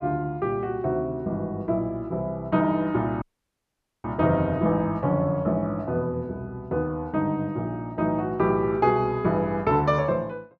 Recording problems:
dropout; at 3 s for 1 s

